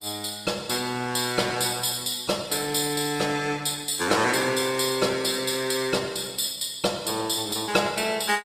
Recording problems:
lossy codec; Opus, log-spectral distance 6 dB, nothing above 15.1 kHz

